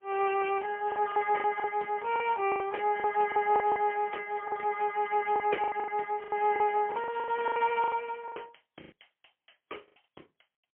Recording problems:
telephone audio; 300 Hz to 3.1 kHz, AMR-NB, then MP3
lost packets; 14% of the sound replaced, filled with the last packet

